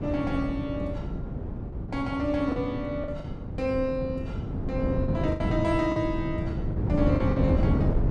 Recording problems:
wind noise; below 230 Hz, SNR 0 dB
lost packets; 6% of the sound replaced, filled with the last packet

